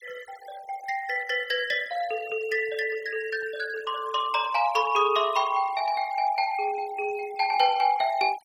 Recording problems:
denoising artefacts; signal-to-artefact ratio 20 dB

